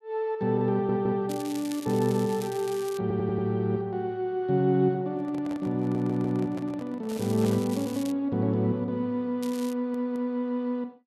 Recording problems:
stutter; 4 times, first at 0.5 s
crackle; from 1.5 to 3 s, from 7 to 8 s and at 9.5 s; loose cable, SNR 16 dB
handling noise; from 5 to 7.5 s; peak -9 dB vs average level

